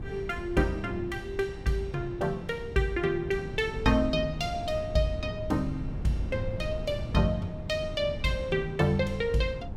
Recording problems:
wind on the microphone; below 180 Hz, SNR 10 dB

